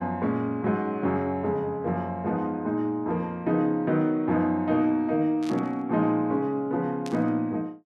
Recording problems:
burst of static; at 5.5 s and at 7 s; peak -10 dB vs average level

